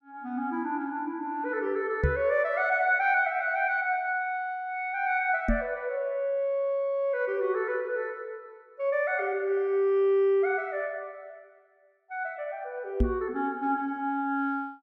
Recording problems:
knock on the microphone; at 2 s, at 5.5 s and at 13 s; peak +6 dB vs average level

